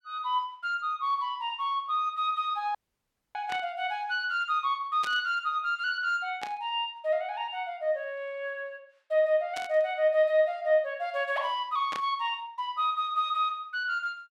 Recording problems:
audio cutting out; at 3 s for 0.5 s
static burst; 5 times, first at 3.5 s; peak -4 dB vs average level

